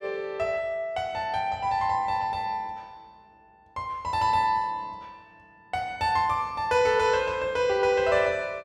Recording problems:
none

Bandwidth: 14.5 kHz